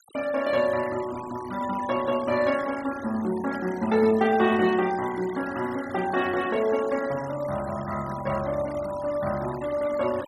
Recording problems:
denoising artefacts; signal-to-artefact ratio 16 dB

